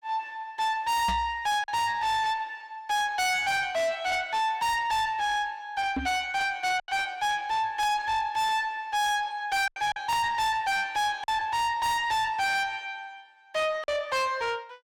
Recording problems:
distortion; soft clipping, signal-to-distortion ratio 6 dB
packet loss; 2% of the sound replaced, filled with silence
microphone bump; at 1 s and at 6 s; peak +3 dB vs average level

